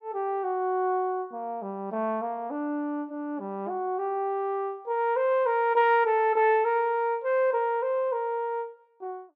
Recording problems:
none

